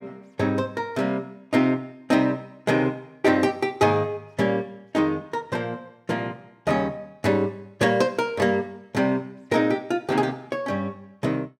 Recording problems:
none

